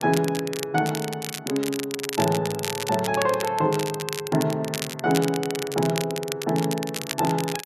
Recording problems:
crackling; vinyl, SNR 7 dB

